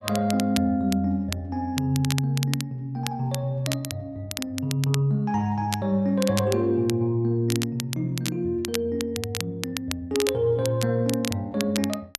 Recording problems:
crackling; vinyl, SNR 9 dB

